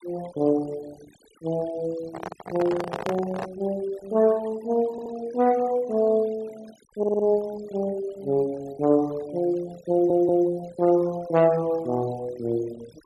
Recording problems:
noise reduction artefacts; signal-to-artefact ratio 22 dB
microphone handling noise; from 2 to 3.5 s; peak -2 dB vs average level
audio stuttering; at 5 s, at 7 s and at 10 s

